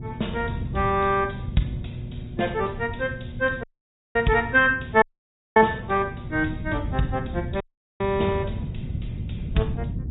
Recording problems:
treble cut off; nothing above 3.8 kHz
lossy compression; Vorbis, log-spectral distance 4 dB
electrical hum; 60 Hz, harmonics up to 720 Hz, SNR 18 dB
wind on the microphone; below 160 Hz, SNR 9 dB
dropout; at 3.5 s for 0.5 s, at 5 s for 0.5 s and at 7.5 s

